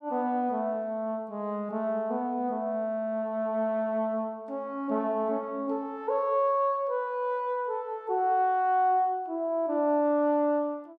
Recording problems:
none

